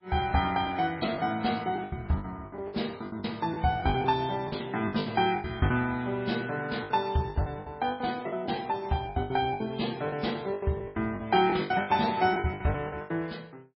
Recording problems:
codec artefacts; MP3, log-spectral distance 3 dB, nothing above 4.6 kHz
lost packets; 16% of the sound replaced, filled with the last packet

